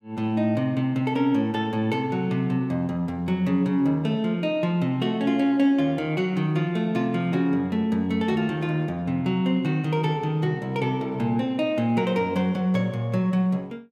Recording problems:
none

